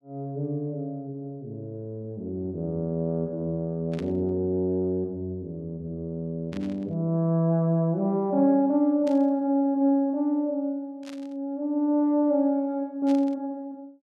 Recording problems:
static burst; 5 times, first at 4 s; peak -13 dB vs average level

